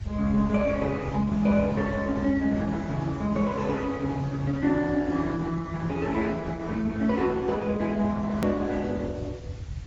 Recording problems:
lossy codec; Opus, then AAC, log-spectral distance 3 dB, nothing above 19.5 kHz
background hiss; slope -2 dB per octave, SNR 26 dB
low-frequency rumble; below 110 Hz, SNR 10 dB
click at an edit; at 8.5 s

